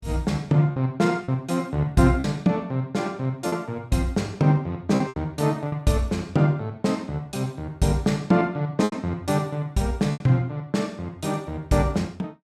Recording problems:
lost packets; 4% of the sound replaced, filled with repeated pitch periods

